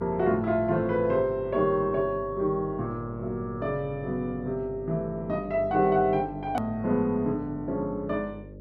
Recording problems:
hum; 50 Hz, harmonics up to 600 Hz, SNR 16 dB
click at an edit; at 6.5 s

